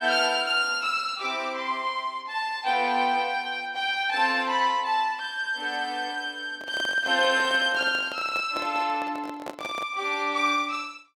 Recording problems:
handling noise; from 6.5 to 10 s; peak -6 dB vs average level

